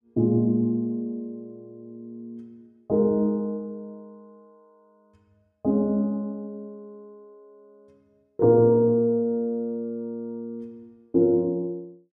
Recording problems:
none

